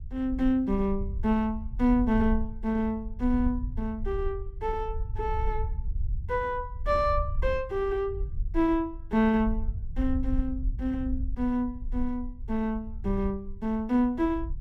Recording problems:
rumble; below 64 Hz, SNR 7 dB

